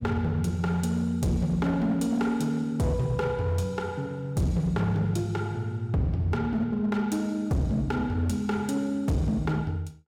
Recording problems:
distorted audio; hard clipping, signal-to-distortion ratio 11 dB

